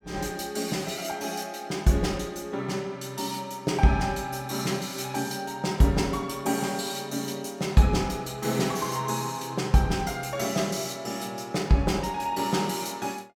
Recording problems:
none

